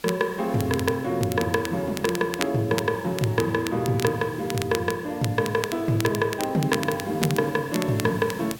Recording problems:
hiss; slope -1 dB per octave, SNR 21 dB
crackling; vinyl, SNR 11 dB

